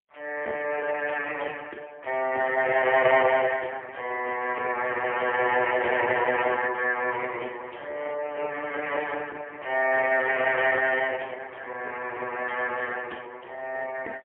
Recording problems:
telephone audio; 320 Hz to 3 kHz, AMR-NB, then MP3

